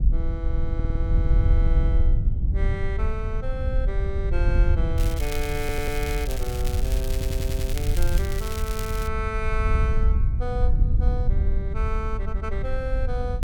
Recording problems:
wind noise; below 72 Hz, SNR -7 dB
audio stuttering; at 0.5 s, at 5.5 s and at 7 s
crackling; from 5 to 9 s; loose cable, SNR 4 dB

